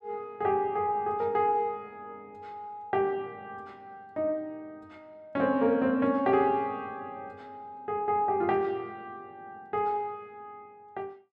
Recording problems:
none

